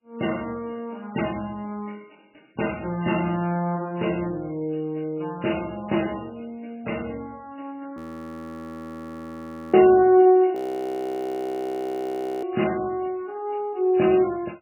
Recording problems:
codec artefacts; MP3, log-spectral distance 6 dB
frozen audio; at 8 s for 2 s and at 11 s for 2 s

